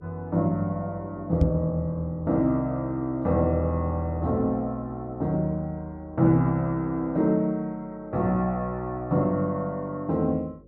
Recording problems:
hum; 50 Hz, harmonics up to 550 Hz, SNR 26 dB
microphone bump; at 1.5 s; peak +6 dB vs average level

